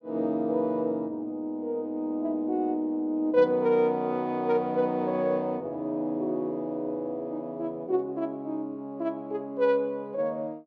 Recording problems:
none

